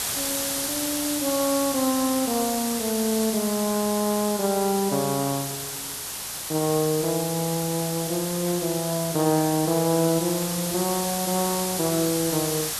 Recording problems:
background hiss; slope 0 dB per octave, SNR 3 dB

